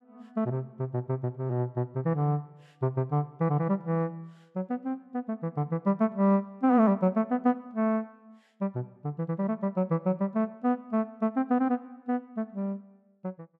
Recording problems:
none

